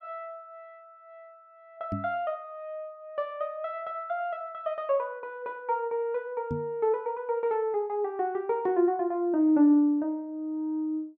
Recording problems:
microphone bump; at 2 s and at 6.5 s; peak 0 dB vs average level

